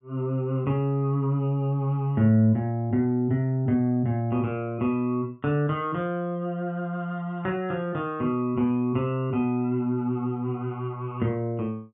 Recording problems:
low-pass filter; nothing above 3.5 kHz

